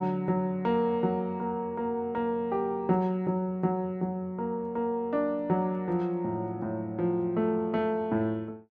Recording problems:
none

